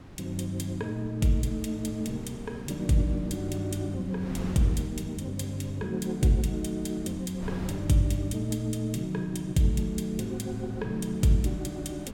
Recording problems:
wind noise; below 310 Hz, SNR 14 dB

